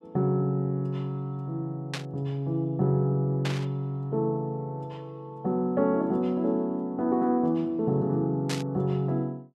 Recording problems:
static burst; at 2 s, at 3.5 s and at 8.5 s; peak -1 dB vs average level

